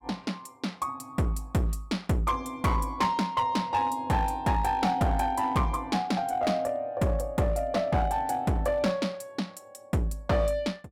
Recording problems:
distortion; hard clipping, uneven, signal-to-distortion ratio 10 dB

